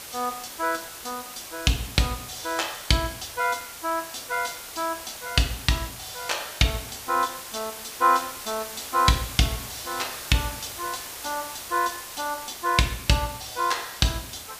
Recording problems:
hiss; slope 0 dB per octave, SNR 10 dB

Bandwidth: 15 kHz